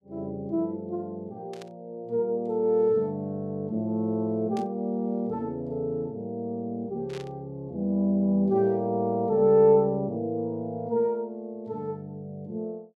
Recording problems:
burst of static; at 1.5 s, at 4.5 s and at 7 s; peak -13 dB vs average level

